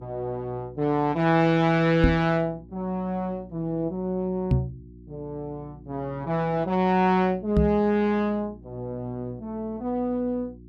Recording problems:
hum; 60 Hz, harmonics up to 360 Hz, SNR 22 dB
microphone thump; at 2 s, at 4.5 s and at 7.5 s; peak +7 dB vs average level

